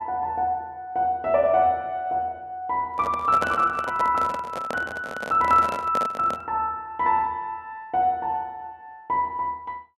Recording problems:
microphone handling noise; from 3 to 6.5 s; peak -1 dB vs average level

